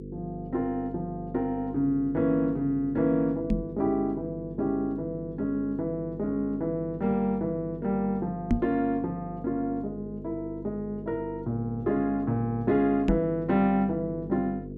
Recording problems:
hum; 50 Hz, harmonics up to 500 Hz, SNR 11 dB
microphone bump; at 3.5 s, at 8.5 s and at 13 s; peak +7 dB vs average level

